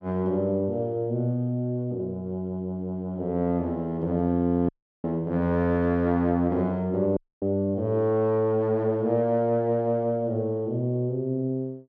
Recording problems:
dropout; at 4.5 s and at 7 s

